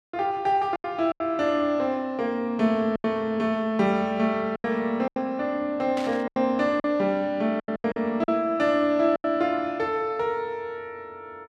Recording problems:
packet loss; 7% of the sound replaced, filled with silence
burst of static; at 6 s; peak -8 dB vs average level

